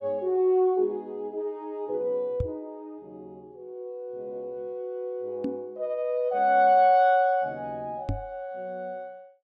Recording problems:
microphone bump; at 2.5 s, at 5.5 s and at 8 s; peak 0 dB vs average level

